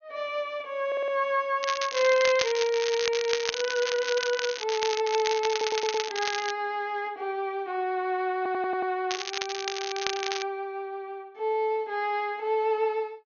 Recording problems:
treble cut off; nothing above 6.5 kHz
audio stuttering; at 1 s, at 5.5 s and at 8.5 s
crackling; from 1.5 to 6.5 s and from 9 to 10 s; loose cable, SNR 4 dB

